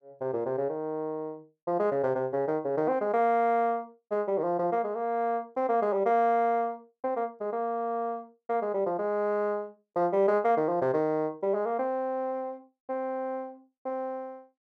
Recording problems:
none

